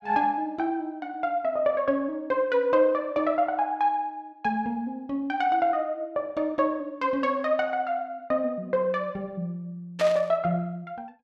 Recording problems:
burst of static; at 10 s; peak -3 dB vs average level

